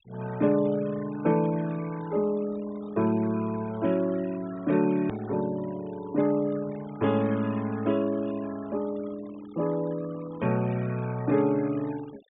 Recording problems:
treble cut off; nothing above 4 kHz
denoising artefacts; signal-to-artefact ratio 21 dB
click at an edit; at 5 s

